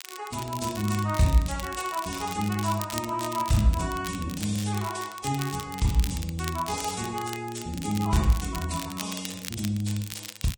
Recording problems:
lossy codec; Vorbis, log-spectral distance 4 dB
crackle; vinyl, SNR 11 dB

